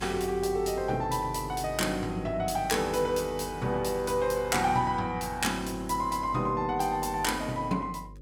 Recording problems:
hum; 50 Hz, harmonics up to 550 Hz, SNR 17 dB

